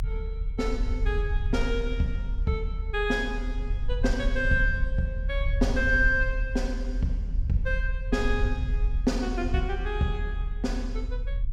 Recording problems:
rumble; below 52 Hz, strongest tone 38 Hz, SNR 2 dB

